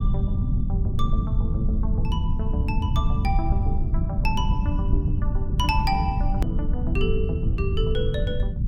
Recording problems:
low-frequency rumble; below 110 Hz, SNR -5 dB
edit click; at 6.5 s

